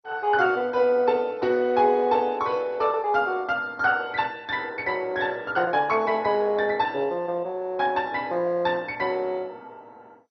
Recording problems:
lossy codec; MP2, log-spectral distance 2 dB, nothing above 5.8 kHz

